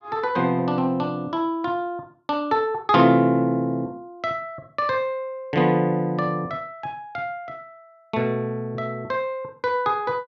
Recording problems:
none

